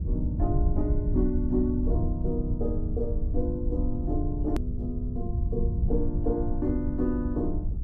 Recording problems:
rumble; below 92 Hz, SNR -1 dB
click at an edit; at 4.5 s

